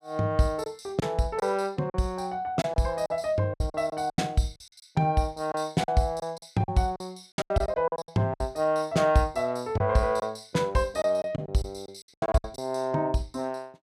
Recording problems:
lost packets; 11% of the sound replaced, filled with silence

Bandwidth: 15 kHz